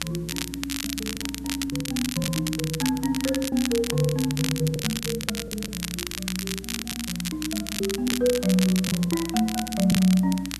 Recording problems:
hum; 60 Hz, harmonics up to 300 Hz, SNR 16 dB
background hiss; SNR 27 dB
crackle; vinyl, SNR 5 dB
packet loss; 10% of the sound replaced, filled with the last packet

